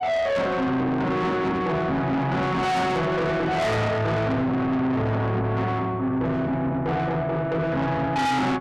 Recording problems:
distorted audio; soft clipping, signal-to-distortion ratio 6 dB

